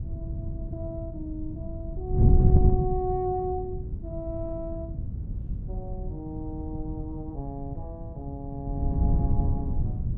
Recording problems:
wind noise; below 130 Hz, SNR -5 dB

